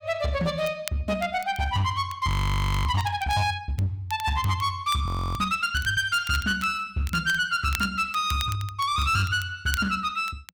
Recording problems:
distorted audio; hard clipping, uneven, signal-to-distortion ratio 11 dB
crackle; vinyl, SNR 17 dB
frozen audio; at 2.5 s for 0.5 s and at 5 s

